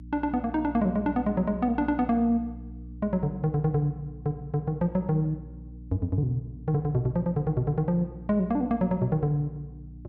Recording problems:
hum; 60 Hz, harmonics up to 300 Hz, SNR 15 dB

